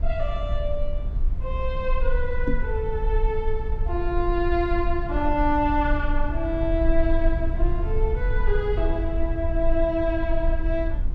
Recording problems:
low-frequency rumble; below 50 Hz, strongest tone 22 Hz, SNR 1 dB
microphone thump; at 2.5 s; peak +3 dB vs average level

